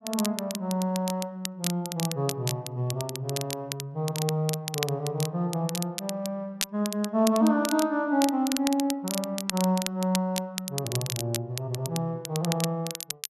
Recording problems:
crackling; vinyl, SNR 6 dB

